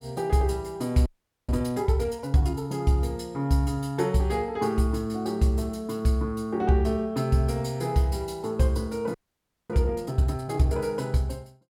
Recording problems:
frozen audio; at 1 s and at 9 s for 0.5 s

